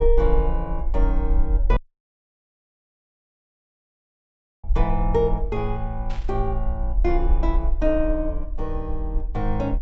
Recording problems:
low-pass filter; nothing above 7.8 kHz
rumble; below 48 Hz, SNR 0 dB
audio cutting out; at 2 s for 3 s
burst of static; at 6 s; peak -12 dB vs average level

